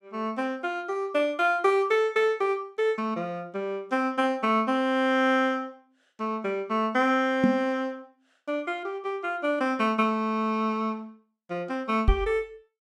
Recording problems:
knock on the microphone; at 7.5 s and at 12 s; peak +7 dB vs average level

